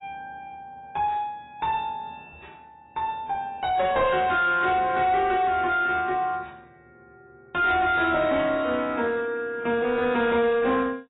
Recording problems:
lossy compression; AAC, log-spectral distance 2 dB, nothing above 3.2 kHz
distortion; soft clipping, signal-to-distortion ratio 10 dB

